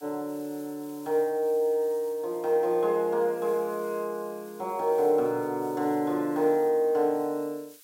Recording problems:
hiss; SNR 24 dB

